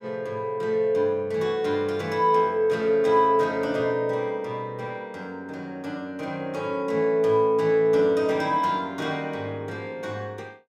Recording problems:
none

